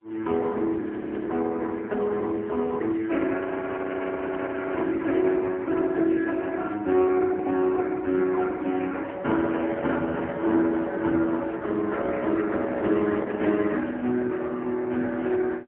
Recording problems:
telephone audio; 170 Hz to 3.1 kHz, AMR-NB, then MP3
frozen audio; at 1 s and at 3.5 s for 1.5 s

